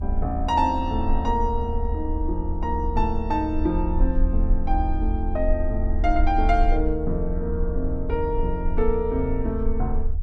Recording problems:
rumble; below 72 Hz, SNR 2 dB

